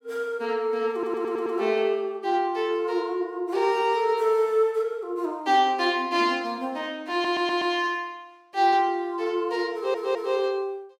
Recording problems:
stutter; at 1 s, at 7 s and at 9.5 s

